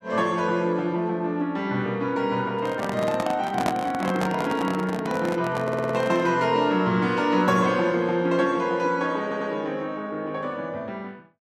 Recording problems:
microphone handling noise; from 2.5 to 6.5 s; peak +3 dB vs average level
audio stuttering; at 5.5 s and at 9 s

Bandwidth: 13.5 kHz